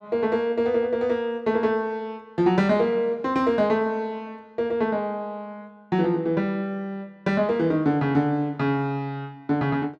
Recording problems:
none

